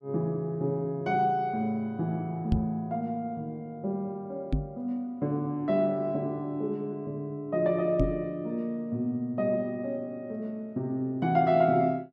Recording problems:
microphone bump; at 2.5 s, at 4.5 s and at 8 s; peak +7 dB vs average level

